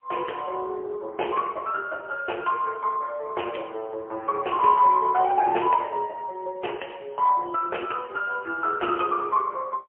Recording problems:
phone line; 300 Hz to 3.1 kHz, AMR-NB, then MP3

